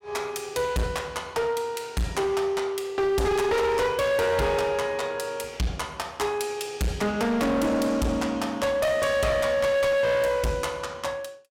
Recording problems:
distortion; hard clipping, signal-to-distortion ratio 7 dB

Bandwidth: 16.5 kHz